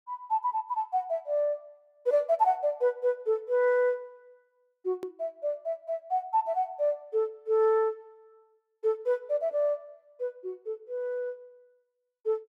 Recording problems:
hard cut with a click; at 5 s

